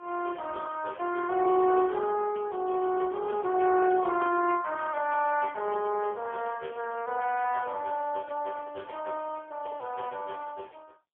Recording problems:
phone line; 320 Hz to 3 kHz, AMR-NB, then MP3

